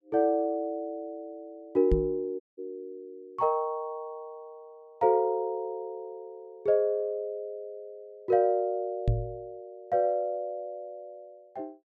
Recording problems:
microphone bump; at 2 s and at 9 s; peak +6 dB vs average level
audio cutting out; at 2.5 s

